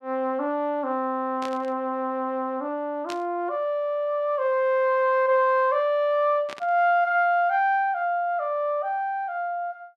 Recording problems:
burst of static; at 1.5 s, at 3 s and at 6.5 s; peak -8 dB vs average level

